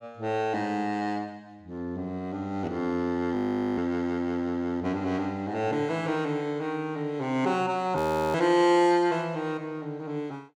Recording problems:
frozen audio; at 3.5 s and at 8 s

